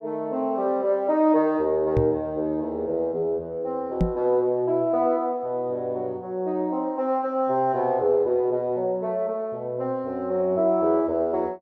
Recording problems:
microphone bump; at 2 s and at 4 s; peak +5 dB vs average level

